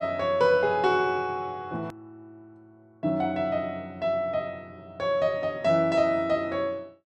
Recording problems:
hard cut with a click; at 2 s

